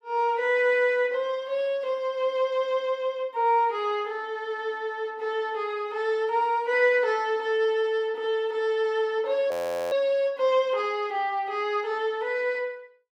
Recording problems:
audio freezing; at 9.5 s

